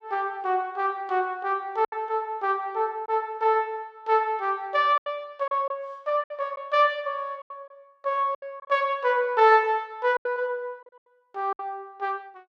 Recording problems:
lost packets; 6% of the sound replaced, filled with silence

